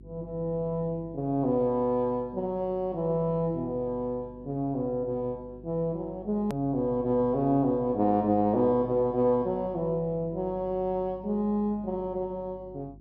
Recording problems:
hum; 50 Hz, harmonics up to 400 Hz, SNR 21 dB
edit click; at 6.5 s

